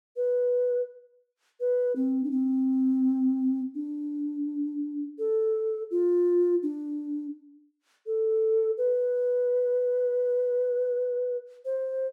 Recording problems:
none

